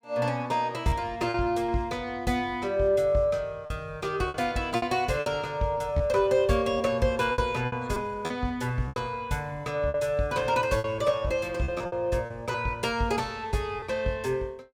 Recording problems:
packet loss; 7% of the sound replaced, filled with repeated pitch periods

